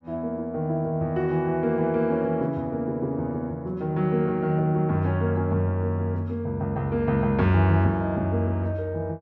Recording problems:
none

